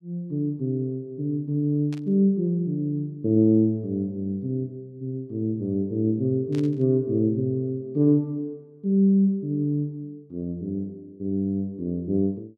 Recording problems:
burst of static; at 2 s and at 6.5 s; peak -15 dB vs average level

